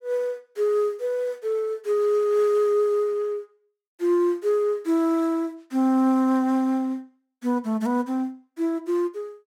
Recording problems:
none

